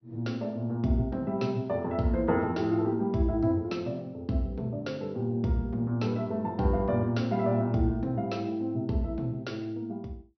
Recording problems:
treble missing; nothing above 6 kHz

